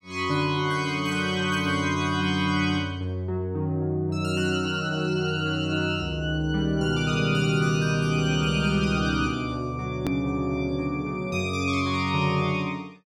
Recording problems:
edit click; at 10 s

